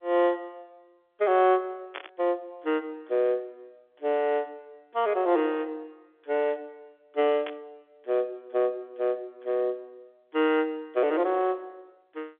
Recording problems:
telephone audio; 280 Hz to 3.5 kHz, G.711
burst of static; at 2 s and at 7.5 s; peak -6 dB vs average level

